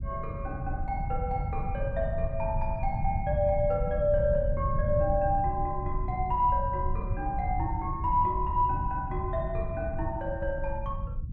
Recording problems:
rumble; below 110 Hz, SNR 4 dB

